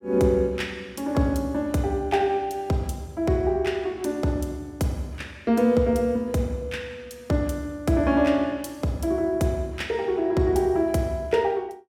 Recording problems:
none

